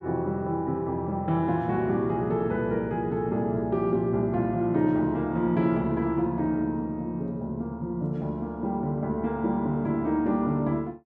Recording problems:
none

